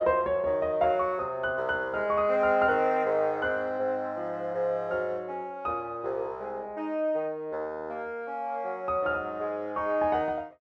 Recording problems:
none

